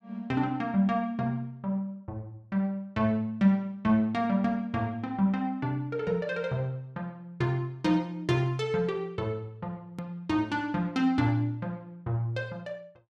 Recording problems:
click at an edit; at 10 s

